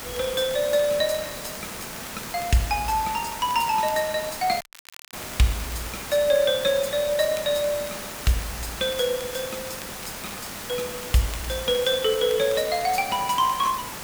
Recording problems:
background hiss; slope -2 dB per octave, SNR 9 dB
crackle; vinyl, SNR 21 dB
dropout; at 4.5 s for 0.5 s

